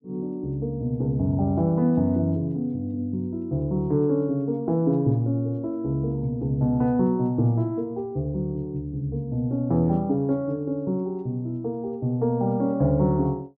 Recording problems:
none

